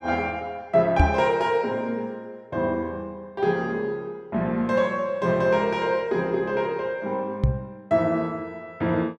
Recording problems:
microphone thump; at 1 s and at 7.5 s; peak +9 dB vs average level

